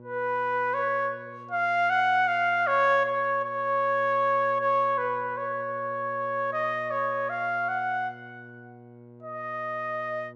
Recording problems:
hum; 60 Hz, harmonics up to 1.1 kHz, SNR 22 dB

